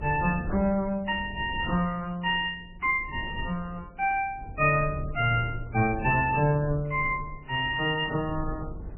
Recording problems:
lossy compression; MP3, log-spectral distance 3 dB, nothing above 2.4 kHz
wind noise; below 120 Hz, SNR 13 dB

